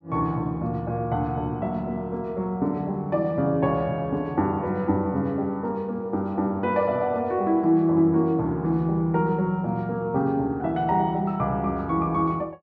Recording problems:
none

